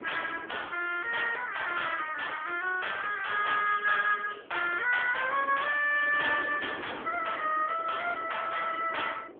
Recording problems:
phone line; 300 Hz to 3.4 kHz, AMR-NB
wind on the microphone; below 560 Hz, SNR 17 dB

